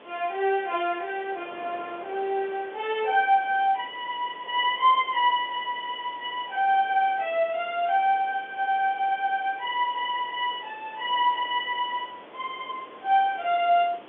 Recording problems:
telephone audio; 300 Hz to 3.4 kHz, G.711
background hiss; SNR 28 dB
wind noise; below 1 kHz, SNR 22 dB

